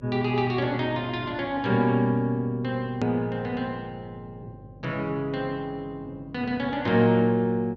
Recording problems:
low-pass filter; nothing above 7.7 kHz
electrical hum; 50 Hz, harmonics up to 600 Hz, SNR 23 dB
click at an edit; at 3 s

